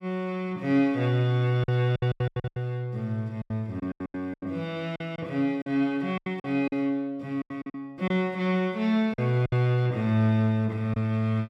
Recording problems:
packet loss; 11% of the sound replaced, filled with silence

